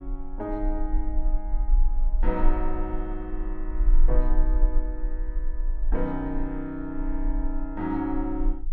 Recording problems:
low-frequency rumble; below 34 Hz, strongest tone 24 Hz, SNR -3 dB

